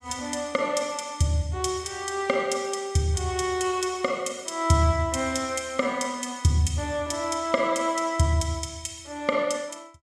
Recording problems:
none

